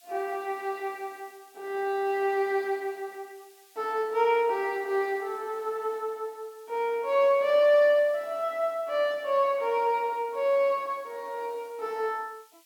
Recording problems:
background hiss; slope +6 dB per octave, SNR 29 dB

